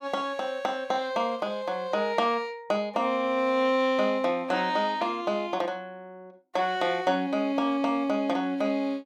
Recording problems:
none

